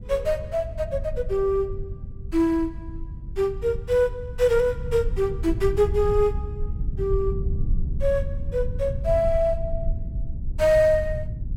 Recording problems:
rumble; below 84 Hz, SNR 8 dB

